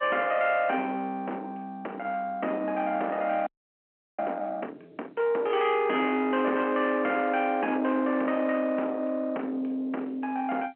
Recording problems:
phone line; 220 Hz to 3.1 kHz, G.711
distorted audio; soft clipping, signal-to-distortion ratio 12 dB
audio freezing; at 3.5 s for 0.5 s

